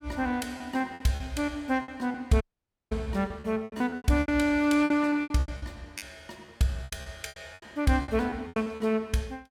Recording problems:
lost packets; 17% of the sound replaced, filled with repeated pitch periods
dropout; at 2.5 s for 0.5 s

